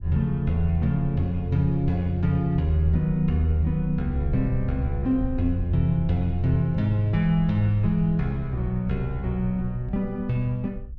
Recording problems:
low-frequency rumble; below 62 Hz, SNR 12 dB

